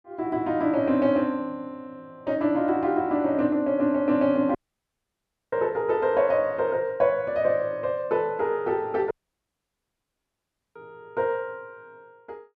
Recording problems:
audio cutting out; at 4.5 s for 1 s and at 9 s for 1.5 s

